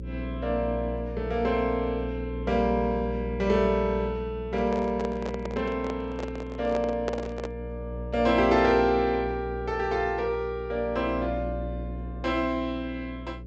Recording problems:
low-pass filter; nothing above 8 kHz
hum; 60 Hz, harmonics up to 540 Hz, SNR 9 dB
handling noise; from 4.5 to 7.5 s; peak 0 dB vs average level

